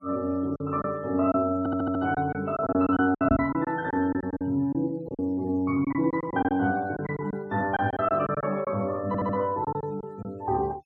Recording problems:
denoising artefacts; signal-to-artefact ratio 27 dB
packet loss; 10% of the sound replaced, filled with silence
audio stuttering; at 1.5 s and at 9 s
microphone thump; at 3.5 s; peak +3 dB vs average level

